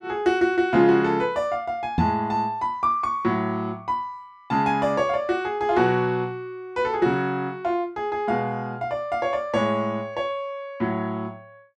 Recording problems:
microphone bump; at 2 s; peak +6 dB vs average level

